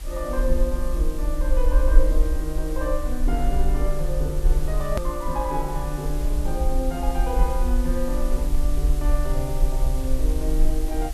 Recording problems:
hiss; slope -1 dB per octave, SNR 13 dB
low-frequency rumble; below 46 Hz, strongest tone 22 Hz, SNR -3 dB
edit click; at 5 s

